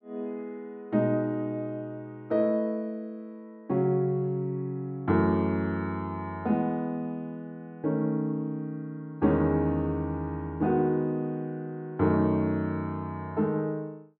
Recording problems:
none

